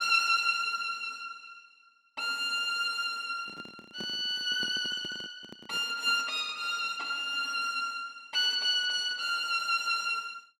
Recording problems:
microphone handling noise; from 3.5 to 6 s; peak -9 dB vs average level

